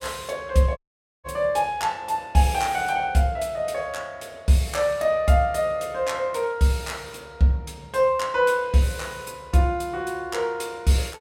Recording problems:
dropout; at 1 s

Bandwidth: 16 kHz